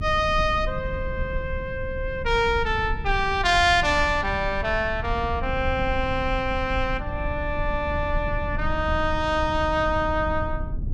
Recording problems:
low-frequency rumble; below 92 Hz, SNR 8 dB

